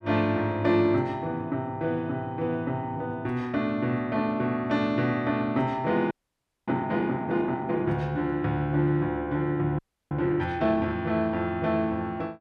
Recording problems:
frozen audio; at 6 s for 0.5 s and at 10 s

